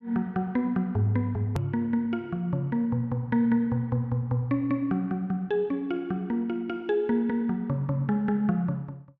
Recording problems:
hard cut with a click; at 1.5 s

